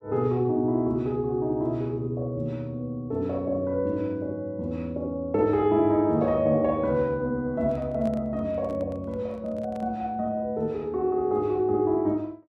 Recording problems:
microphone handling noise; from 7.5 to 10 s; peak -12 dB vs average level

